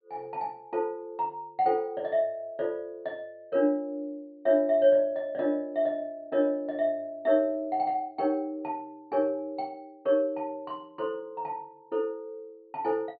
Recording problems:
treble missing; nothing above 4.6 kHz

